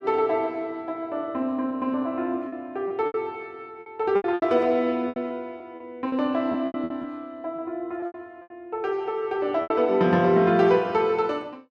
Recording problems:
lost packets; 9% of the sound replaced, filled with repeated pitch periods

